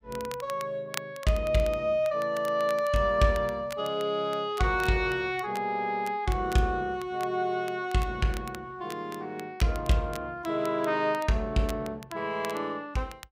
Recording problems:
crackling; vinyl, SNR 18 dB

